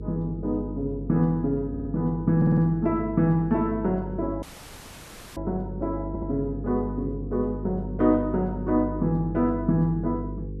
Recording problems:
hum; 50 Hz, harmonics up to 500 Hz, SNR 9 dB
stutter; at 1.5 s, at 2.5 s and at 6 s
dropout; at 4.5 s for 1 s

